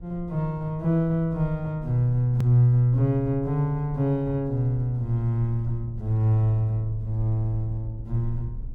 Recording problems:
low-frequency rumble; below 60 Hz, strongest tone 22 Hz, SNR 17 dB
hard cut with a click; at 2.5 s

